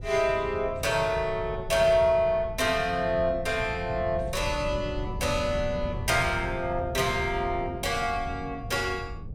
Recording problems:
wind on the microphone; below 140 Hz, SNR 11 dB

